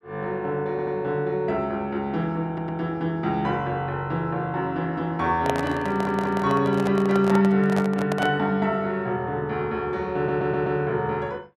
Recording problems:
stutter; 4 times, first at 0.5 s
handling noise; from 5.5 to 8.5 s; peak +2 dB vs average level

